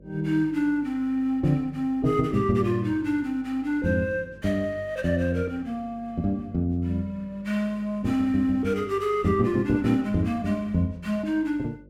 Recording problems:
hum; 50 Hz, harmonics up to 600 Hz, SNR 25 dB

